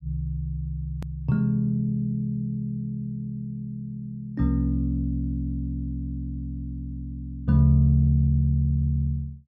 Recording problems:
edit click; at 1 s

